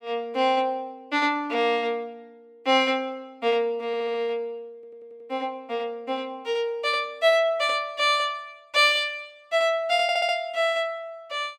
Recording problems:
stutter; at 4 s, at 4.5 s and at 10 s

